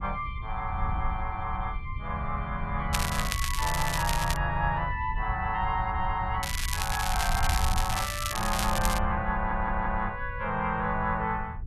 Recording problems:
wind on the microphone; below 80 Hz, SNR 5 dB
crackling; from 3 to 4.5 s and from 6.5 to 9 s; loose cable, SNR 3 dB
stutter; at 9.5 s

